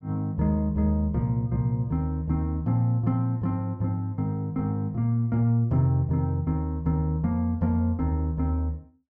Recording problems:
none

